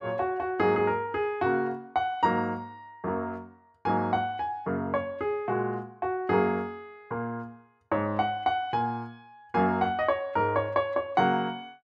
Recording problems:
none

